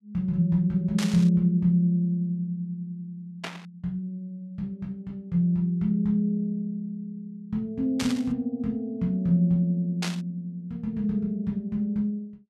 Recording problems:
burst of static; 4 times, first at 1 s; peak -1 dB vs average level

